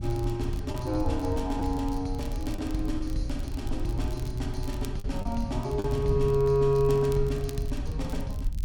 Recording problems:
low-frequency rumble; below 68 Hz, SNR 8 dB
wind noise; below 120 Hz, SNR 12 dB
crackle; vinyl, SNR 22 dB
packet loss; 2% of the sound replaced, filled with the last packet

